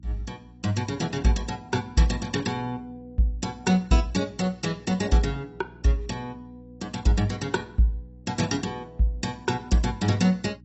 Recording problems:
codec artefacts; AAC, log-spectral distance 3 dB, nothing above 7.8 kHz
hum; 60 Hz, harmonics up to 300 Hz, SNR 23 dB

